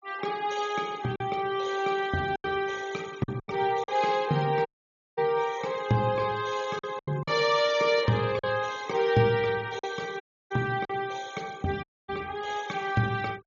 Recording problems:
treble cut off; nothing above 7.3 kHz
denoising artefacts; signal-to-artefact ratio 22 dB
packet loss; 5% of the sound replaced, filled with silence
dropout; at 4.5 s for 0.5 s, at 10 s and at 12 s

